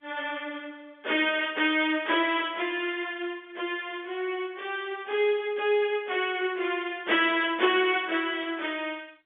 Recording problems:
telephone audio; 260 Hz to 3.6 kHz, G.711

